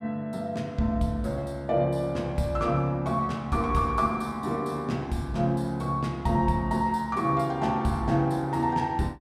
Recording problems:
none

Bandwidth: 15 kHz